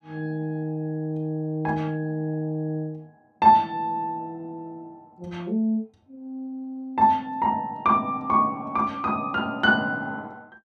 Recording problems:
none

